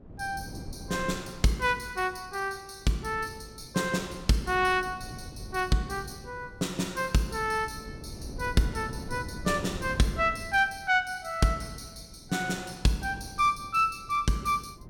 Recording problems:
wind on the microphone; below 260 Hz, SNR 15 dB

